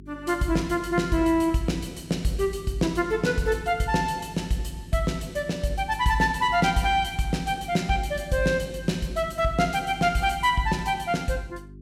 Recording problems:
mains hum; 50 Hz, harmonics up to 400 Hz, SNR 19 dB

